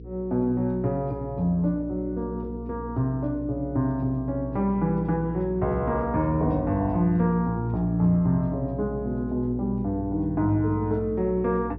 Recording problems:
treble missing; nothing above 5.8 kHz
hum; 60 Hz, harmonics up to 480 Hz, SNR 12 dB

